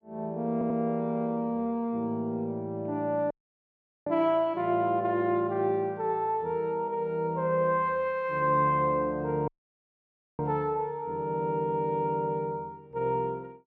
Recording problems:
audio stuttering; at 0.5 s
audio cutting out; at 3.5 s for 0.5 s and at 9.5 s for 1 s

